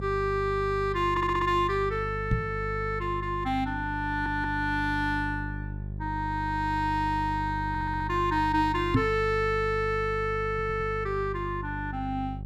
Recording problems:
electrical hum; 50 Hz, harmonics up to 400 Hz, SNR 8 dB
stutter; 4 times, first at 1 s
microphone thump; at 2.5 s and at 9 s; peak +8 dB vs average level

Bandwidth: 15 kHz